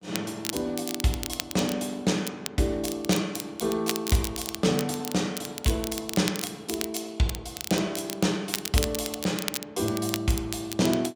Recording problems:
crackle; vinyl, SNR 7 dB

